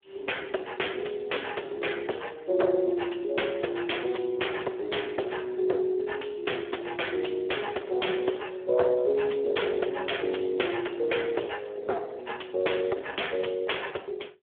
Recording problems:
telephone audio; 320 Hz to 3.5 kHz, Speex
distortion; soft clipping, signal-to-distortion ratio 14 dB

